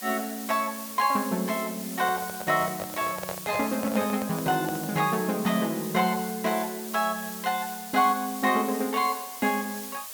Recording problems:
background hiss; SNR 10 dB
handling noise; from 2 to 5 s; peak -3 dB vs average level

